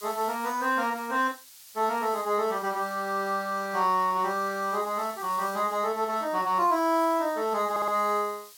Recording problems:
background hiss; slope +4 dB per octave, SNR 19 dB
stutter; at 7.5 s

